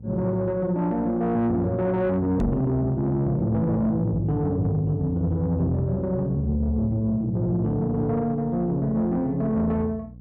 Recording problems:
distorted audio; soft clipping, signal-to-distortion ratio 11 dB
hum; 60 Hz, harmonics up to 540 Hz, SNR 17 dB
microphone bump; at 2.5 s; peak +3 dB vs average level

